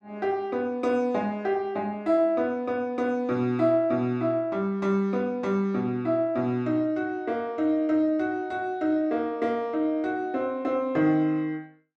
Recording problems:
none

